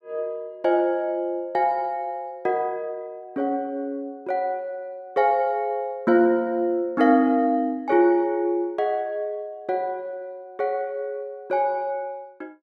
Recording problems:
none

